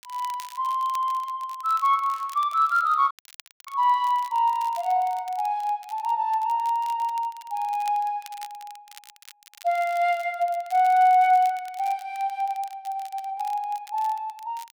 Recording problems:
crackling; vinyl, SNR 24 dB
dropout; at 3 s for 0.5 s

